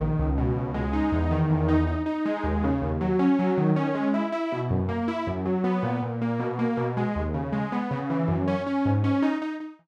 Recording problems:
none

